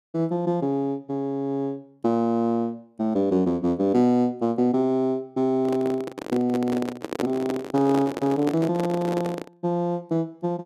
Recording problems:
microphone handling noise; from 5.5 to 9.5 s; peak +2 dB vs average level

